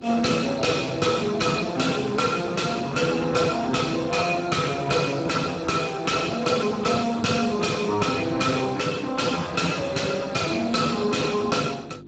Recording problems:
lossy codec; Speex, log-spectral distance 5 dB, nothing above 7.6 kHz
distortion; soft clipping, signal-to-distortion ratio 10 dB
hum; 50 Hz, harmonics up to 550 Hz, SNR 19 dB

